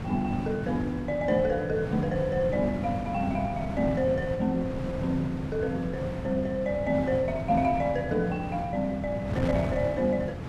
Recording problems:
wind on the microphone; below 350 Hz, SNR 7 dB

